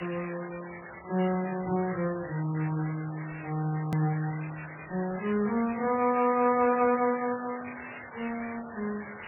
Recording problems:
lossy compression; MP3, then MP3, log-spectral distance 21 dB, nothing above 17.7 kHz
background hiss; SNR 13 dB
hard cut with a click; at 4 s

